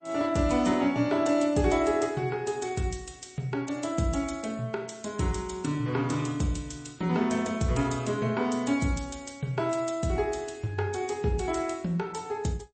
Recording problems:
lossy compression; MP3, log-spectral distance 4 dB, nothing above 8.2 kHz

